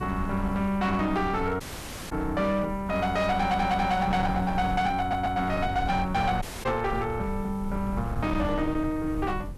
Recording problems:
distortion; hard clipping, signal-to-distortion ratio 12 dB
hiss; slope -5 dB per octave, SNR 29 dB
wind on the microphone; below 130 Hz, SNR 10 dB
dropout; at 1.5 s for 0.5 s and at 6.5 s
stutter; at 3.5 s and at 5 s

